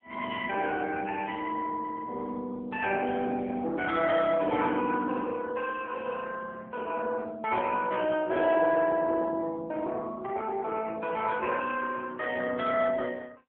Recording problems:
telephone audio; 220 Hz to 3.1 kHz, AMR-NB

